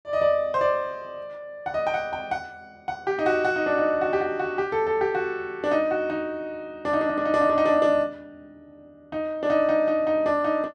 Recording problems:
none

